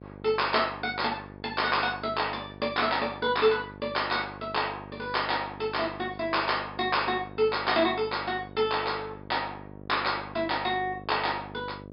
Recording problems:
low-pass filter; nothing above 5.2 kHz
hum; 50 Hz, harmonics up to 750 Hz, SNR 16 dB

